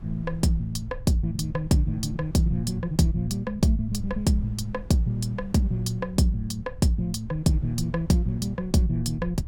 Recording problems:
low-frequency rumble; below 88 Hz, SNR 15 dB
wind noise; below 260 Hz, SNR 25 dB

